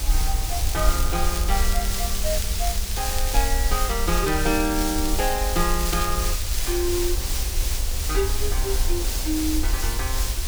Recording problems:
hiss; slope +1 dB per octave, SNR 1 dB
rumble; below 58 Hz, SNR 0 dB
wind on the microphone; below 720 Hz, SNR 16 dB
crackle; from 0.5 to 3.5 s and from 4 to 7 s; loose cable, SNR 9 dB

